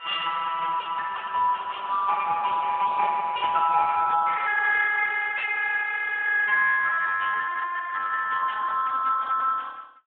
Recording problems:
telephone audio; 990 Hz to 2.1 kHz, Speex
static burst; at 3.5 s; peak -9 dB vs average level

